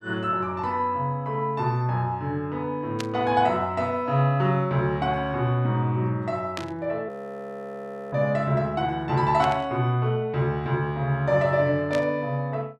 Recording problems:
burst of static; 4 times, first at 3 s; peak -3 dB vs average level
frozen audio; at 7 s for 1 s

